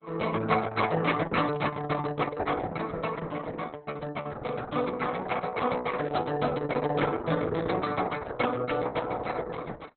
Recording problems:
codec artefacts; Opus, log-spectral distance 5 dB, nothing above 4.1 kHz
static burst; at 1.5 s, at 4.5 s and at 6 s; peak -13 dB vs average level

